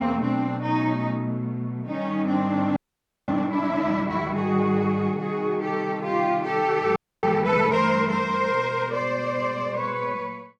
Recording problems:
frozen audio; at 3 s for 0.5 s and at 7 s

